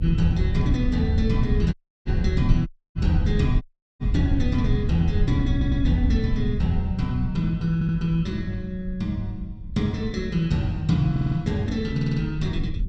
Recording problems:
low-frequency rumble; below 100 Hz, SNR 4 dB
dropout; at 1.5 s, at 2.5 s and at 3.5 s
audio stuttering; 4 times, first at 5.5 s

